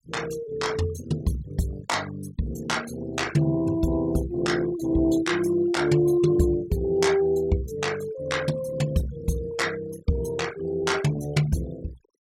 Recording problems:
denoising artefacts; signal-to-artefact ratio 18 dB

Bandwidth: 16.5 kHz